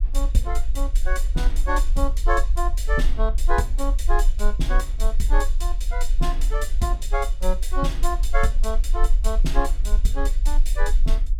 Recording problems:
low-frequency rumble; below 40 Hz, strongest tone 24 Hz, SNR -3 dB

